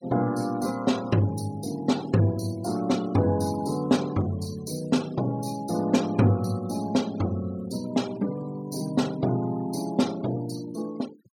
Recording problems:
noise reduction artefacts; signal-to-artefact ratio 19 dB

